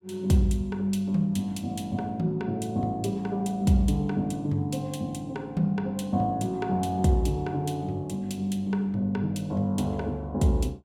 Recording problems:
none

